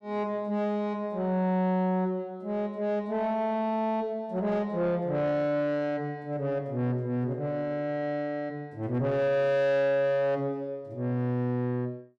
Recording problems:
distortion; soft clipping, signal-to-distortion ratio 12 dB

